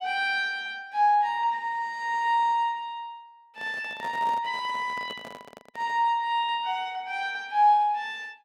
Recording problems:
handling noise; from 3.5 to 6 s; peak -11 dB vs average level

